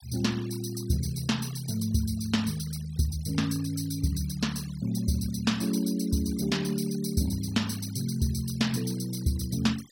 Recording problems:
noise reduction artefacts; signal-to-artefact ratio 18 dB

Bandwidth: 16.5 kHz